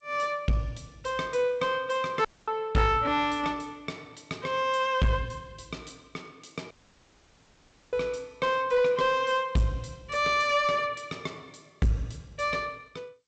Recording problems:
lossy compression; G.722, log-spectral distance 3 dB, nothing above 7.8 kHz
distorted audio; soft clipping, signal-to-distortion ratio 11 dB
audio cutting out; at 2.5 s and at 6.5 s for 1 s

